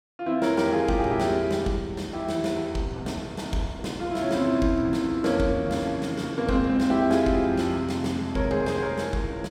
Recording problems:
none

